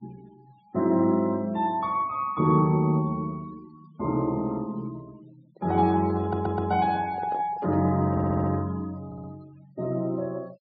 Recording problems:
low-pass filter; nothing above 5.1 kHz
denoising artefacts; signal-to-artefact ratio 26 dB
microphone handling noise; from 5.5 to 8.5 s; peak -10 dB vs average level
stutter; at 6 s, at 8 s and at 9 s

